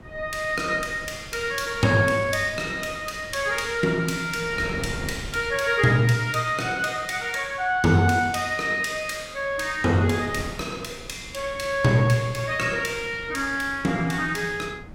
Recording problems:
wind noise; below 360 Hz, SNR 18 dB

